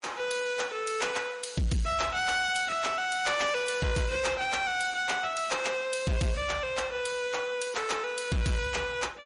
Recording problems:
lossy codec; MP3, log-spectral distance 4 dB, nothing above 10.4 kHz
distorted audio; soft clipping, signal-to-distortion ratio 10 dB

